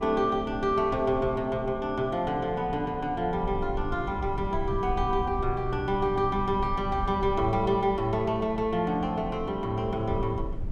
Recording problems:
rumble; below 92 Hz, SNR 11 dB

